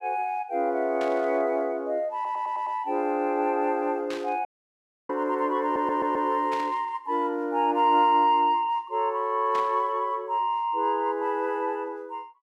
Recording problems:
burst of static; 4 times, first at 1 s; peak -9 dB vs average level
audio stuttering; at 2 s and at 5.5 s
audio cutting out; at 4.5 s for 0.5 s

